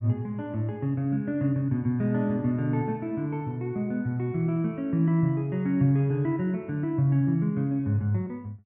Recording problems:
none

